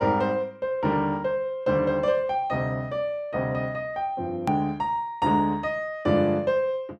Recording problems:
edit click; at 4.5 s

